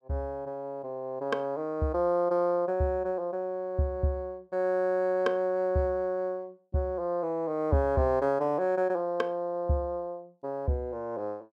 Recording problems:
none

